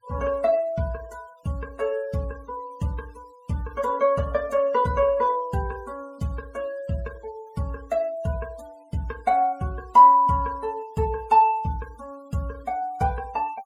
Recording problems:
denoising artefacts; signal-to-artefact ratio 27 dB

